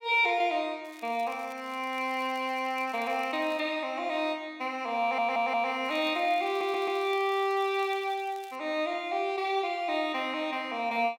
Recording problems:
crackling; from 1 to 3.5 s and from 6 to 8.5 s; loose cable, SNR 25 dB
stutter; at 5 s and at 6.5 s

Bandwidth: 16 kHz